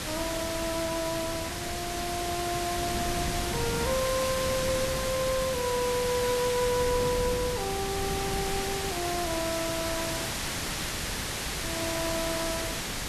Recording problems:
hiss; slope -1 dB per octave, SNR 1 dB
wind on the microphone; below 300 Hz, SNR 8 dB

